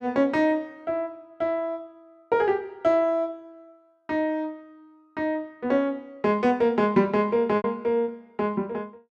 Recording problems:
lost packets; 1.7% of the sound replaced, filled with repeated pitch periods

